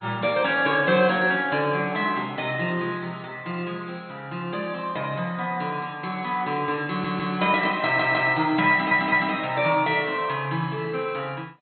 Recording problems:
codec artefacts; MP2, log-spectral distance 3 dB, nothing above 4.1 kHz
stutter; at 7 s, at 8 s and at 8.5 s

